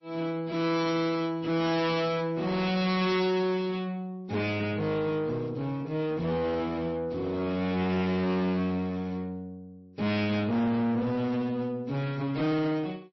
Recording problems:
lossy compression; MP3, then MP3, log-spectral distance 2 dB, nothing above 5.7 kHz
distortion; soft clipping, signal-to-distortion ratio 7 dB

